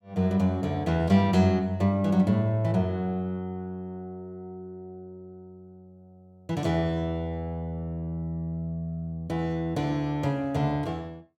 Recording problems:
none

